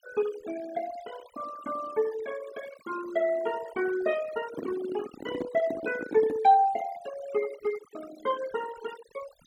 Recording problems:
noise reduction artefacts; signal-to-artefact ratio 15 dB
handling noise; from 4.5 to 6.5 s; peak 0 dB vs average level

